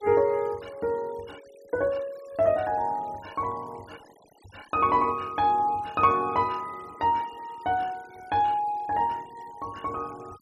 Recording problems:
denoising artefacts; signal-to-artefact ratio 25 dB

